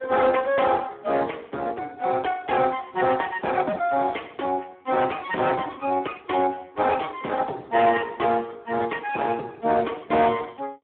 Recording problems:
telephone audio; 240 Hz to 3.2 kHz, Speex
distortion; soft clipping, signal-to-distortion ratio 10 dB

